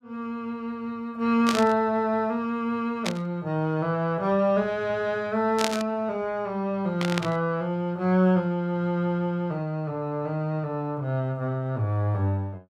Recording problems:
burst of static; 4 times, first at 1.5 s; peak +3 dB vs average level

